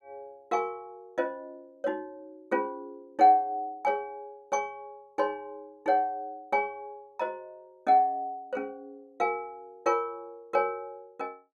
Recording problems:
none

